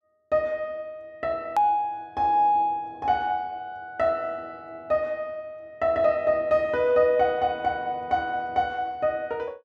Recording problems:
click at an edit; at 1.5 s

